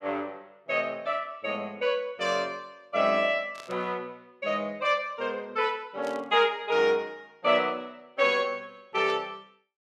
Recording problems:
static burst; at 3.5 s, at 6 s and at 9 s; peak -11 dB vs average level

